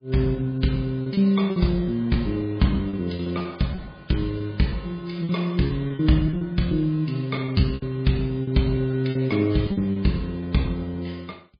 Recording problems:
lossy compression; MP3, log-spectral distance 3 dB, nothing above 4.5 kHz
packet loss; 11% of the sound replaced, filled with repeated pitch periods

